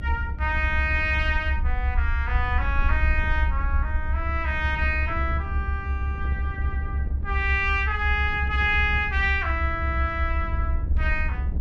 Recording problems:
electrical hum; 50 Hz, harmonics up to 900 Hz, SNR 20 dB
rumble; below 72 Hz, SNR 1 dB
wind on the microphone; below 130 Hz, SNR 11 dB

